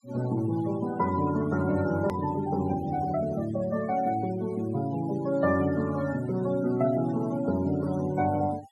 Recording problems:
noise reduction artefacts; signal-to-artefact ratio 17 dB
click at an edit; at 2 s

